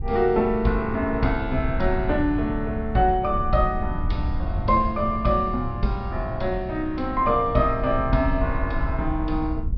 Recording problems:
treble cut off; nothing above 5.5 kHz
wind on the microphone; below 82 Hz, SNR 7 dB

